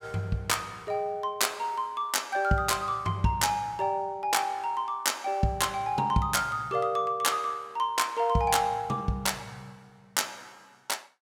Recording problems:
none

